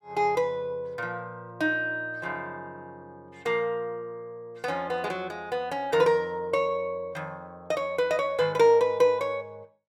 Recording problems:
none

